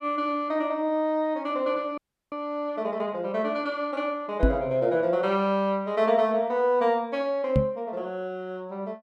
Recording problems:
frozen audio; at 2 s
microphone bump; at 4.5 s and at 7.5 s; peak +7 dB vs average level

